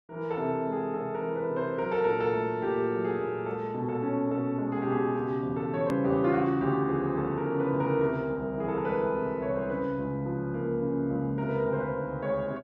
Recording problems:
hard cut with a click; at 6 s

